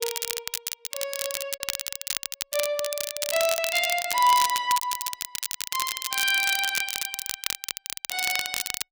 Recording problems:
crackle; vinyl, SNR 3 dB
lost packets; 6% of the sound replaced, filled with repeated pitch periods

